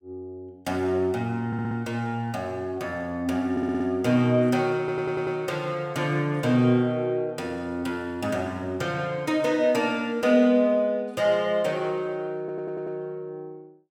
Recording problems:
stutter; 4 times, first at 1.5 s

